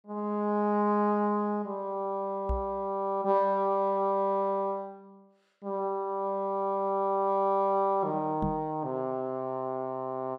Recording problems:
microphone bump; at 2.5 s and at 8.5 s; peak 0 dB vs average level

